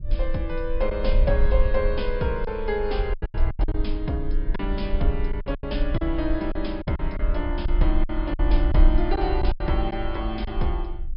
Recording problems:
treble cut off; nothing above 5.5 kHz
low-frequency rumble; below 50 Hz, SNR 0 dB
lost packets; 8% of the sound replaced, filled with silence

